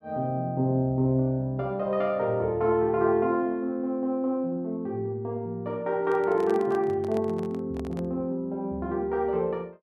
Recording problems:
handling noise; from 6 to 8 s; peak -8 dB vs average level

